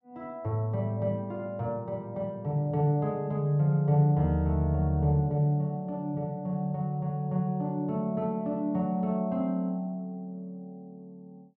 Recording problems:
none

